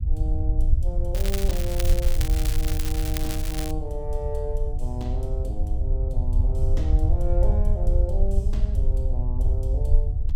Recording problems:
low-frequency rumble; below 66 Hz, SNR -9 dB
crackling; from 1 to 3.5 s; loose cable, SNR 1 dB

